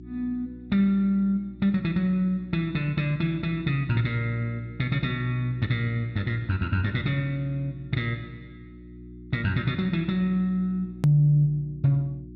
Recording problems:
treble missing; nothing above 7.7 kHz
hum; 60 Hz, harmonics up to 360 Hz, SNR 18 dB
click at an edit; at 11 s

